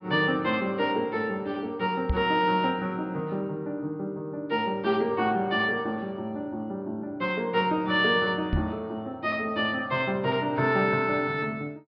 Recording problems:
treble cut off; nothing above 5.5 kHz
knock on the microphone; at 2 s and at 8.5 s; peak +4 dB vs average level

